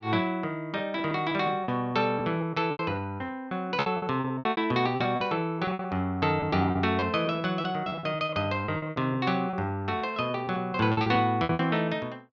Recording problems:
packet loss; 15% of the sound replaced, filled with repeated pitch periods

